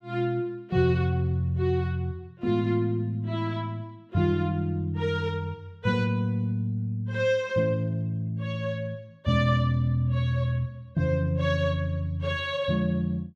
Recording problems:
none

